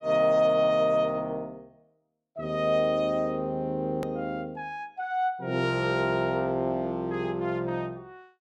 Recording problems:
edit click; at 4 s

